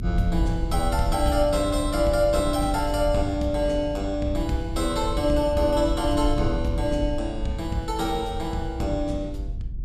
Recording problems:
rumble; below 80 Hz, SNR 6 dB

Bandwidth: 15 kHz